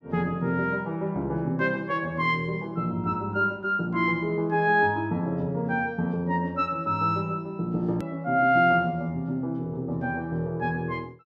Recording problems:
edit click; at 8 s

